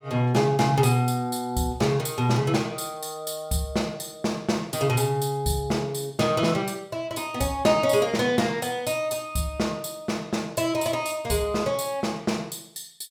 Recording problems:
none

